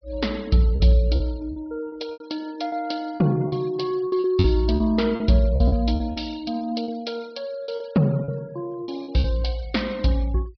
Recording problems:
treble cut off; nothing above 5.5 kHz
denoising artefacts; signal-to-artefact ratio 24 dB
lost packets; 10% of the sound replaced, filled with repeated pitch periods

